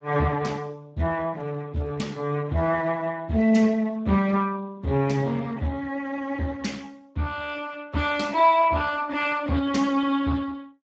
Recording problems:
lossy codec; Speex, log-spectral distance 3 dB, nothing above 7.3 kHz

